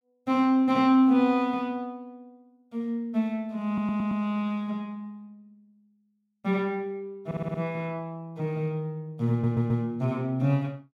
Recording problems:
stutter; at 3.5 s, at 7.5 s and at 9.5 s

